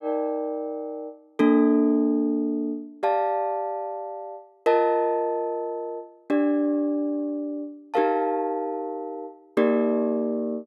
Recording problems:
none

